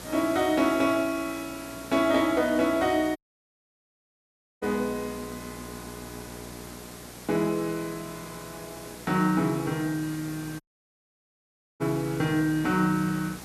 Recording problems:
hum; 60 Hz, harmonics up to 1.7 kHz, SNR 20 dB
hiss; slope -3 dB per octave, SNR 16 dB
audio cutting out; at 3 s for 1.5 s and at 11 s for 1 s

